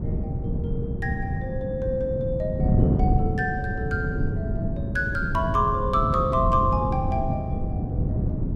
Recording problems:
wind on the microphone; below 190 Hz, SNR 0 dB

